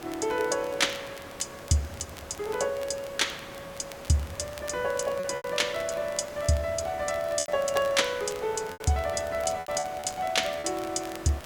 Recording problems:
hiss; SNR 14 dB
crackle; vinyl, SNR 20 dB
lost packets; 4% of the sound replaced, filled with repeated pitch periods

